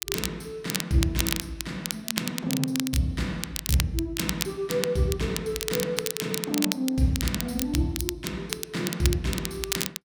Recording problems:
crackle; vinyl, SNR 3 dB

